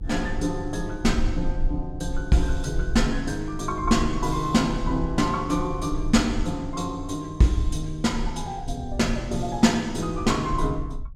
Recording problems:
low-frequency rumble; below 54 Hz, strongest tone 22 Hz, SNR 9 dB

